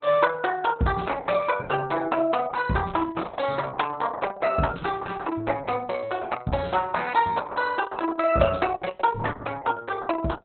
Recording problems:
lossy compression; Opus, log-spectral distance 4 dB, nothing above 4 kHz

